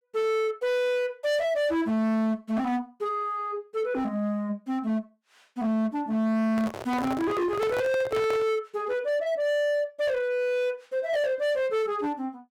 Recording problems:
distortion; hard clipping, signal-to-distortion ratio 7 dB
handling noise; from 6.5 to 8.5 s; peak -1 dB vs average level

